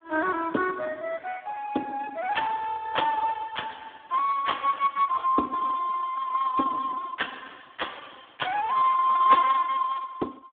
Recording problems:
telephone audio; 220 Hz to 2.1 kHz, Speex

